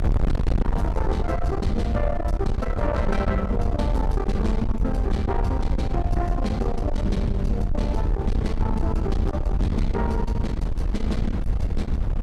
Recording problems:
distorted audio; soft clipping, signal-to-distortion ratio 8 dB
low-frequency rumble; below 86 Hz, strongest tone 42 Hz, SNR 1 dB
wind on the microphone; below 96 Hz, SNR -1 dB

